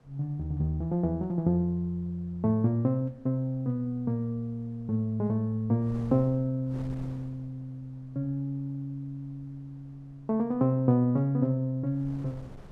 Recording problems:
wind on the microphone; below 350 Hz, SNR 24 dB

